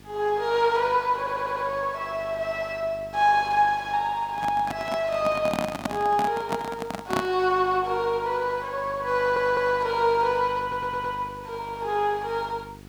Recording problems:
hum; 50 Hz, harmonics up to 850 Hz, SNR 21 dB
hiss; slope -1 dB per octave, SNR 28 dB
stutter; at 1 s, at 9 s and at 11 s
handling noise; from 4.5 to 7.5 s; peak +2 dB vs average level

